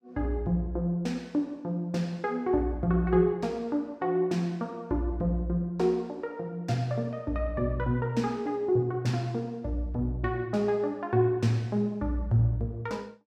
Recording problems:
none

